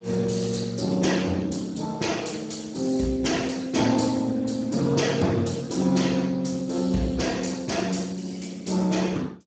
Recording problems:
lossy codec; Speex, log-spectral distance 6 dB, nothing above 7.6 kHz

